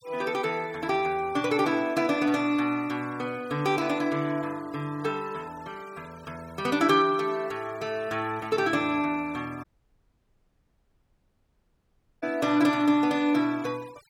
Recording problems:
noise reduction artefacts; signal-to-artefact ratio 24 dB
audio cutting out; at 9.5 s for 2.5 s

